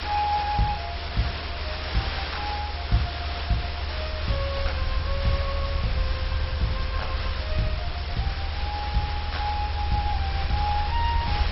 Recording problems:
lossy codec; MP2, log-spectral distance 14 dB, nothing above 5.5 kHz
background hiss; slope -2 dB per octave, SNR 3 dB
low-frequency rumble; below 76 Hz, strongest tone 74 Hz, SNR 1 dB

